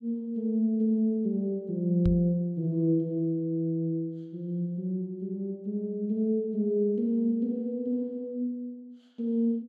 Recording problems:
microphone thump; at 2 s; peak +3 dB vs average level

